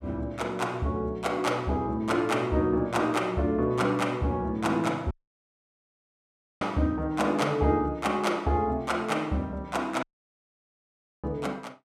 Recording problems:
audio cutting out; at 5 s for 1.5 s and at 10 s for 1 s

